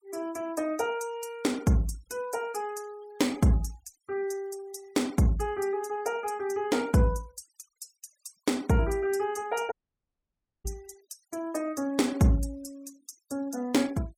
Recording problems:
noise reduction artefacts; signal-to-artefact ratio 24 dB
dropout; at 9.5 s for 1 s

